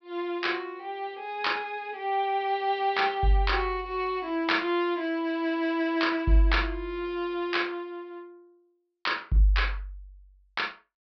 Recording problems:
low-pass filter; nothing above 5.5 kHz

